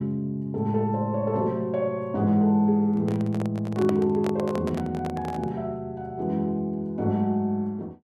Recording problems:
microphone handling noise; from 3 to 5.5 s; peak -2 dB vs average level

